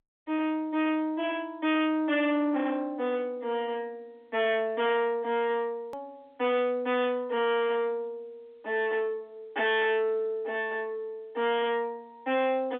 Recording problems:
phone line; 260 Hz to 3.5 kHz, G.711
distortion; soft clipping, signal-to-distortion ratio 6 dB
click at an edit; at 6 s

